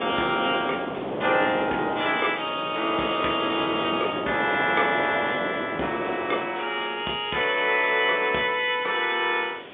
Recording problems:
phone line; 240 Hz to 3.6 kHz, G.711
hiss; SNR 21 dB
wind on the microphone; below 740 Hz, SNR 8 dB

